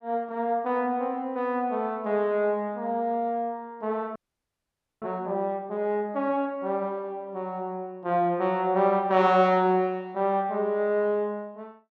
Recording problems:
audio freezing; at 4 s for 1 s

